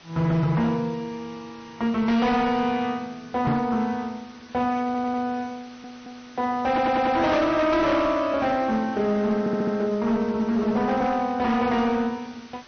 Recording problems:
treble missing; nothing above 6.2 kHz
lossy codec; MP3, log-spectral distance 7 dB
distortion; hard clipping, signal-to-distortion ratio 11 dB
hiss; slope -1 dB per octave, SNR 24 dB
microphone bump; at 3.5 s; peak +2 dB vs average level
stutter; 4 times, first at 5 s

